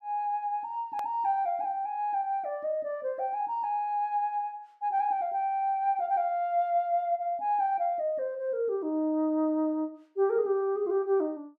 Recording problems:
hard cut with a click; at 1 s

